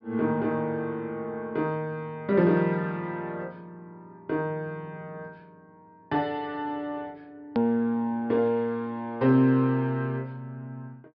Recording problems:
treble cut off; nothing above 5.5 kHz
edit click; at 7.5 s

